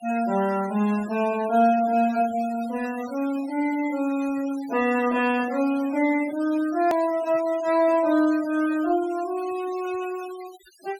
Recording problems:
denoising artefacts; signal-to-artefact ratio 19 dB
hard cut with a click; at 7 s

